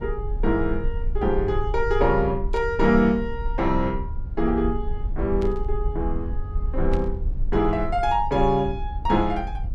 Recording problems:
low-frequency rumble; below 58 Hz, SNR 6 dB
burst of static; at 2.5 s, at 5.5 s and at 7 s; peak -13 dB vs average level

